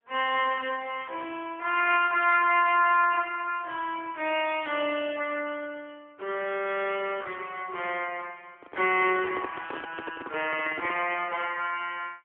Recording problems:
telephone audio; 300 Hz to 3.3 kHz, AMR-NB, then MP3
microphone handling noise; from 8.5 to 11 s; peak -6 dB vs average level

